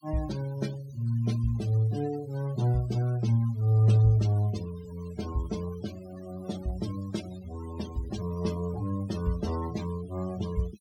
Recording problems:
denoising artefacts; signal-to-artefact ratio 18 dB

